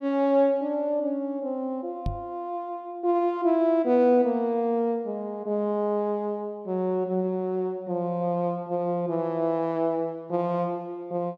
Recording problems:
knock on the microphone; at 2 s; peak -1 dB vs average level

